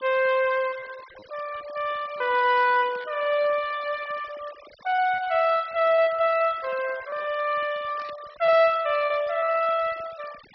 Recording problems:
low-pass filter; nothing above 5.5 kHz
noise reduction artefacts; signal-to-artefact ratio 20 dB
packet loss; 8% of the sound replaced, filled with repeated pitch periods
burst of static; at 3 s and at 8 s; peak -19 dB vs average level

